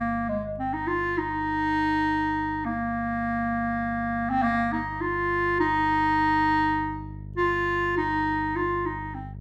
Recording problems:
hum; 50 Hz, harmonics up to 450 Hz, SNR 15 dB

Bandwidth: 14.5 kHz